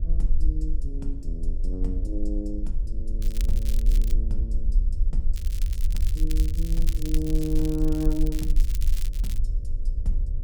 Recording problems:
electrical hum; 50 Hz, harmonics up to 600 Hz, SNR 15 dB
low-frequency rumble; below 44 Hz, SNR -6 dB
crackling; at 3 s and from 5.5 to 9.5 s; loose cable, SNR 9 dB

